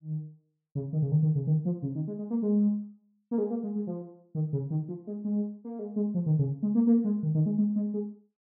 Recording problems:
none

